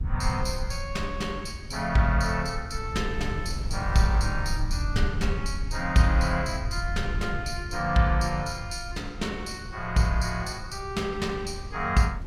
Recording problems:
low-frequency rumble; below 84 Hz, SNR 7 dB
wind noise; below 110 Hz, SNR 16 dB

